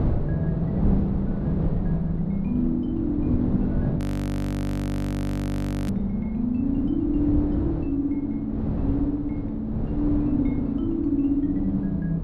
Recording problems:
wind on the microphone; below 240 Hz, SNR 3 dB
audio freezing; at 4 s for 2 s
crackling; at 6 s; loose cable, SNR 27 dB

